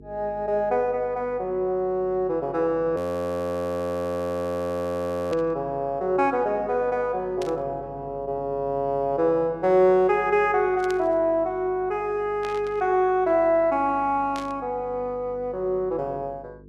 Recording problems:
electrical hum; 50 Hz, harmonics up to 450 Hz, SNR 23 dB
frozen audio; at 3 s for 2.5 s
burst of static; 5 times, first at 5.5 s; peak -10 dB vs average level

